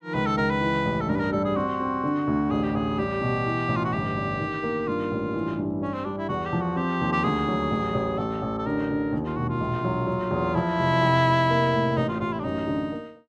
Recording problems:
none

